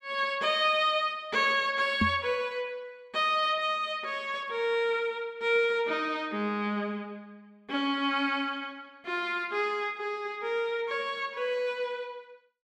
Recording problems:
knock on the microphone; at 2 s; peak +5 dB vs average level

